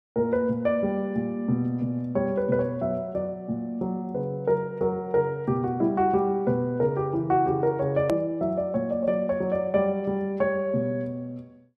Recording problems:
click at an edit; at 8 s

